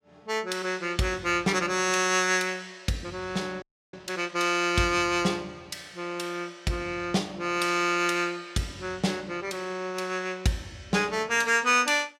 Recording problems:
audio freezing; at 3.5 s

